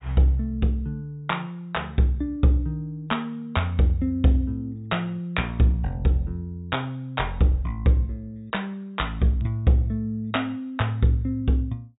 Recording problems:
treble cut off; nothing above 4 kHz

